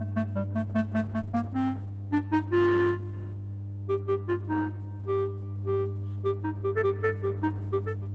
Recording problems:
codec artefacts; Opus, log-spectral distance 2 dB, nothing above 7.6 kHz
electrical hum; 50 Hz, harmonics up to 400 Hz, SNR 7 dB

